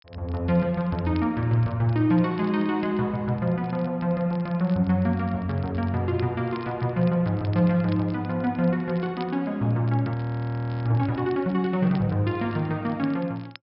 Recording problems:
treble missing; nothing above 5.3 kHz
crackle; vinyl, SNR 27 dB
audio freezing; at 10 s for 0.5 s

